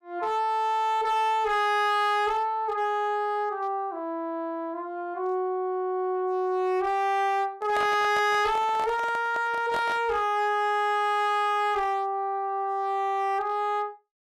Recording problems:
distortion; hard clipping, signal-to-distortion ratio 11 dB
handling noise; from 7.5 to 10 s; peak -5 dB vs average level

